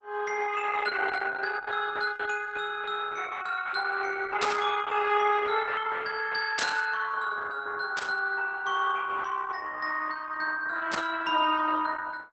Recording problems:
codec artefacts; Opus, log-spectral distance 5 dB, nothing above 8 kHz
static burst; 4 times, first at 4.5 s; peak +1 dB vs average level

